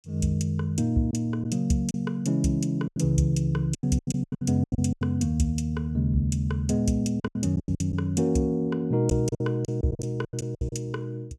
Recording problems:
packet loss; 11% of the sound replaced, filled with silence

